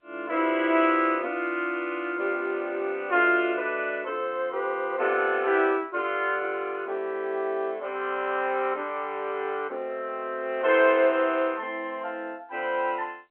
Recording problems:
telephone audio; 280 Hz to 3.3 kHz, G.711

